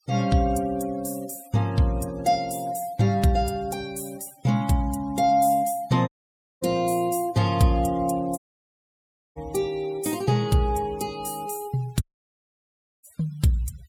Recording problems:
denoising artefacts; signal-to-artefact ratio 23 dB
audio cutting out; at 6 s for 0.5 s, at 8.5 s for 1 s and at 12 s for 1 s

